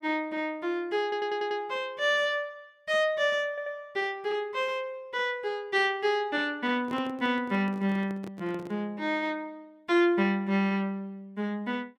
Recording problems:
stutter; at 1 s and at 3.5 s
microphone handling noise; from 7 to 9 s; peak -9 dB vs average level

